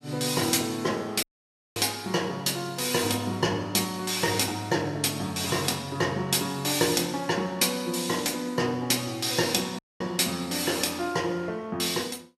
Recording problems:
dropout; at 1 s for 0.5 s and at 10 s

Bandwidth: 15 kHz